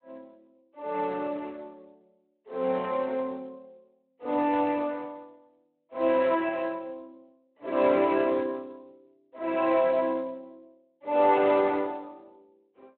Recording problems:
phone line; 280 Hz to 3.6 kHz, Speex

